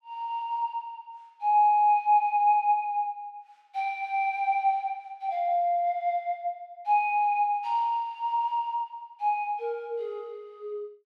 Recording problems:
none

